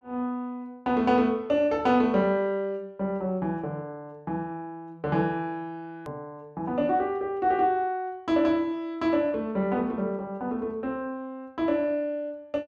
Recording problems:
click at an edit; at 6 s

